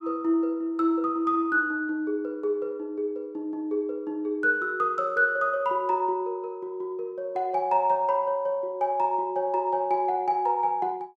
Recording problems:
none

